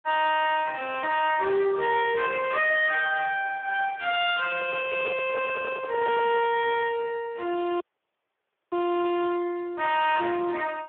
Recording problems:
phone line; 300 Hz to 3.6 kHz, Speex
distorted audio; hard clipping, uneven, signal-to-distortion ratio 11 dB
handling noise; from 4.5 to 6.5 s; peak -1 dB vs average level
audio cutting out; at 8 s for 1 s

